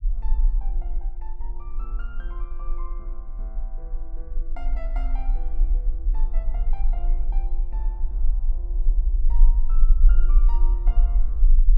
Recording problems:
rumble; below 38 Hz, strongest tone 24 Hz, SNR -20 dB

